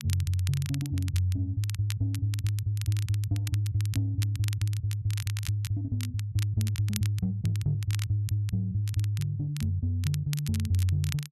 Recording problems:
crackle; vinyl, SNR 14 dB

